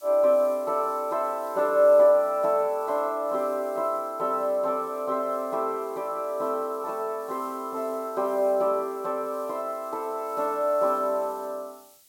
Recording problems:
hiss; SNR 25 dB

